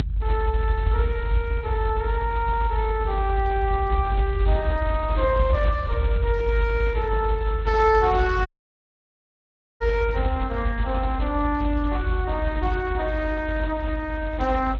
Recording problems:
lossy codec; Speex, log-spectral distance 2 dB
rumble; below 74 Hz, strongest tone 50 Hz, SNR 2 dB
audio cutting out; at 8.5 s for 1.5 s

